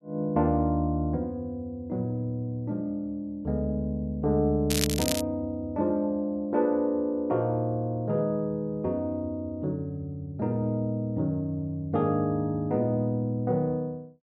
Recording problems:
crackling; at 4.5 s; loose cable, SNR 2 dB

